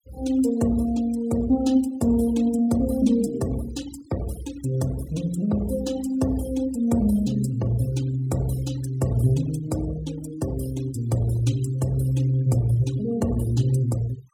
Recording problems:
denoising artefacts; signal-to-artefact ratio 18 dB

